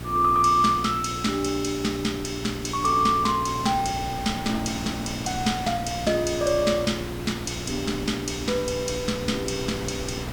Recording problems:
mains hum; 60 Hz, harmonics up to 480 Hz, SNR 12 dB
hiss; slope -4 dB per octave, SNR 16 dB
wind on the microphone; below 1.4 kHz, SNR 14 dB

